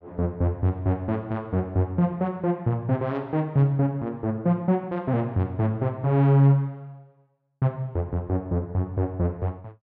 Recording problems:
none

